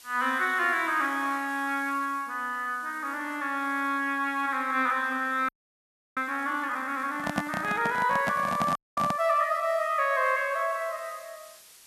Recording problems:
hiss; slope +2 dB per octave, SNR 23 dB
frozen audio; at 5.5 s for 0.5 s and at 9 s
microphone handling noise; from 7 to 9 s; peak +2 dB vs average level

